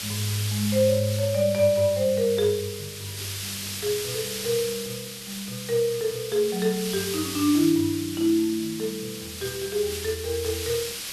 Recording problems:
hiss; SNR 7 dB

